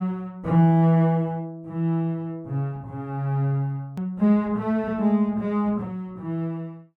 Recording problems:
hard cut with a click; at 4 s

